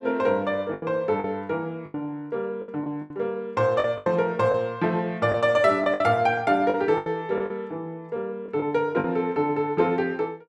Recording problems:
lost packets; 8% of the sound replaced, filled with the last packet

